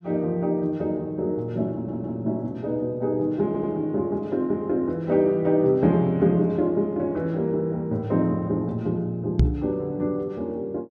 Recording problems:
audio stuttering; at 1.5 s and at 3.5 s
knock on the microphone; at 9.5 s; peak +9 dB vs average level

